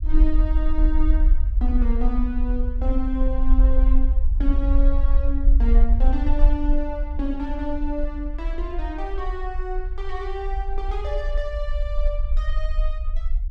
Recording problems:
low-frequency rumble; below 46 Hz, SNR -6 dB

